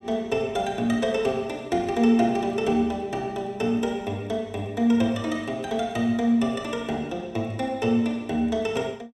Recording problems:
none

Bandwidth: 14.5 kHz